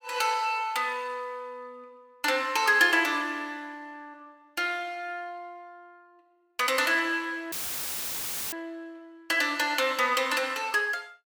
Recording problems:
dropout; at 7.5 s for 1 s; filled with static

